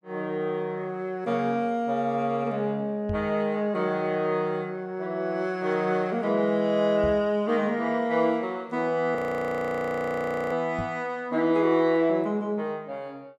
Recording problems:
microphone thump; at 3 s, at 7 s and at 11 s; peak -3 dB vs average level
audio freezing; at 9 s for 1.5 s

